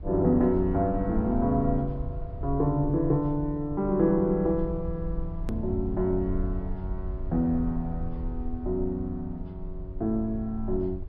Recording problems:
treble cut off; nothing above 5.5 kHz
rumble; below 66 Hz, SNR 10 dB
click at an edit; at 5.5 s

